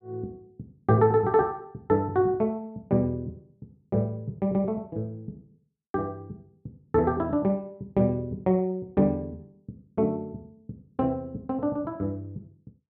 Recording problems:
none

